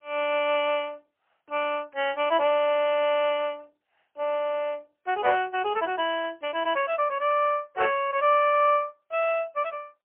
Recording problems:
phone line; 300 Hz to 3.2 kHz, AMR-NB, then MP3

